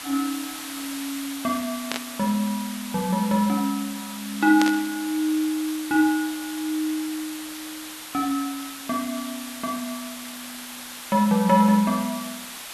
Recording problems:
background hiss; SNR 10 dB
burst of static; at 2 s and at 4.5 s; peak +2 dB vs average level

